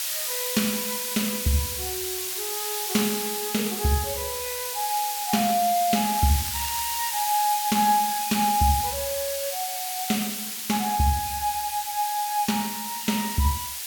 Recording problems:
hiss; slope +4 dB per octave, SNR 2 dB
crackling; at 6 s; loose cable, SNR 12 dB

